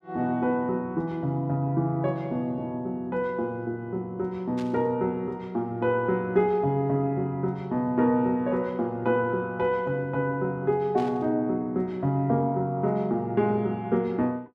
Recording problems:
static burst; at 4.5 s and at 11 s; peak -13 dB vs average level

